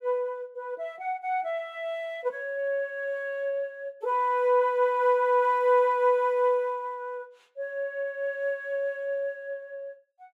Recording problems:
none

